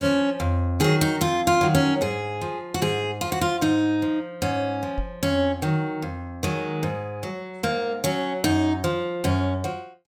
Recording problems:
microphone thump; at 5 s; peak -2 dB vs average level

